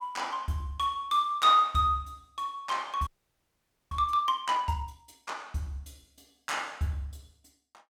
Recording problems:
audio freezing; at 3 s for 1 s

